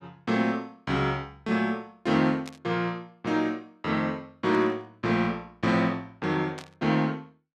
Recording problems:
static burst; at 2.5 s, at 4.5 s and at 6.5 s; peak -9 dB vs average level

